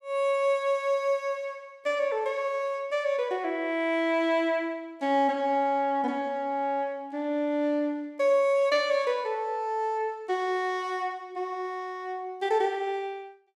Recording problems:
none

